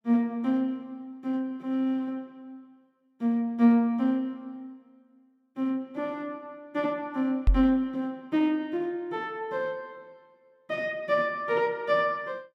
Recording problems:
microphone bump; at 7.5 s; peak +8 dB vs average level

